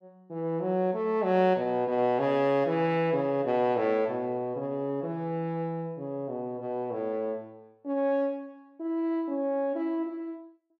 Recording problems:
none

